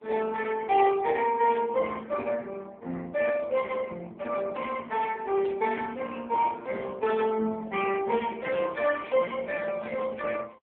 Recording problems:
telephone audio; 260 Hz to 3.1 kHz, AMR-NB
static burst; 4 times, first at 1.5 s; peak -14 dB vs average level

